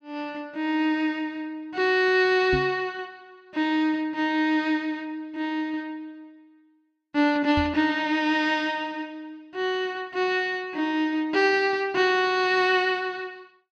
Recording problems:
knock on the microphone; at 2.5 s and at 7.5 s; peak -1 dB vs average level

